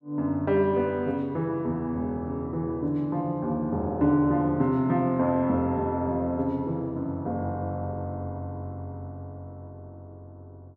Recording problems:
none

